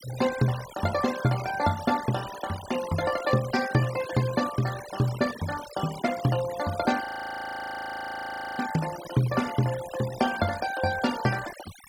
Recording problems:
noise reduction artefacts; signal-to-artefact ratio 12 dB
frozen audio; at 7 s for 1.5 s

